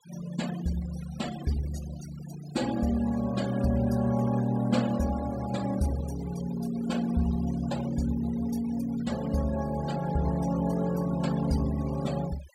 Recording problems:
noise reduction artefacts; signal-to-artefact ratio 16 dB

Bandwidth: 16 kHz